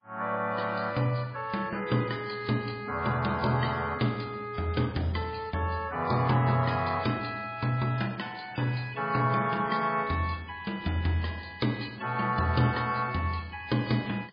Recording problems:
lossy compression; MP3, log-spectral distance 5 dB, nothing above 4.4 kHz

